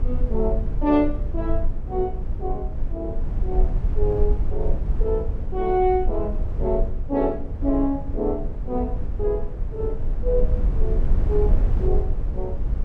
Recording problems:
low-frequency rumble; below 54 Hz, strongest tone 20 Hz, SNR 1 dB
wind on the microphone; below 490 Hz, SNR 18 dB

